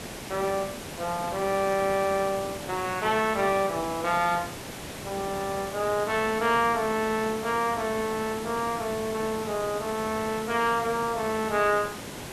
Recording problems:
background hiss; slope -4 dB per octave, SNR 10 dB

